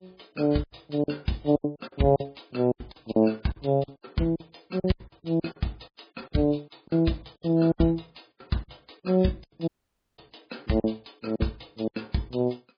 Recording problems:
lossy codec; MP3, log-spectral distance 7 dB, nothing above 5 kHz
packet loss; 15% of the sound replaced, filled with silence
audio cutting out; at 9.5 s for 0.5 s

